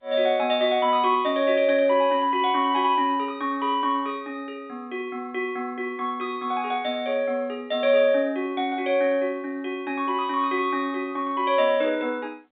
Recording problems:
telephone audio; 190 Hz to 3.7 kHz, G.711

